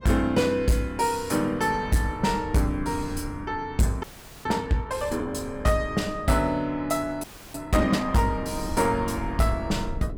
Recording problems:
distorted audio; hard clipping, signal-to-distortion ratio 12 dB
wind noise; below 170 Hz, SNR 14 dB
frozen audio; at 4 s and at 7 s

